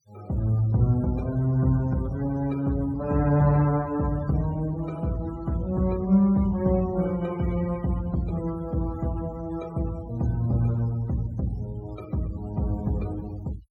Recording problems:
denoising artefacts; signal-to-artefact ratio 23 dB

